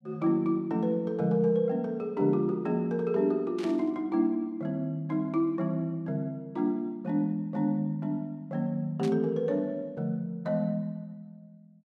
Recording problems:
static burst; at 3.5 s and at 9 s; peak -10 dB vs average level

